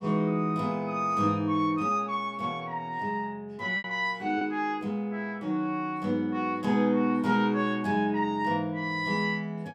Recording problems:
lost packets; 1% of the sound replaced, filled with repeated pitch periods

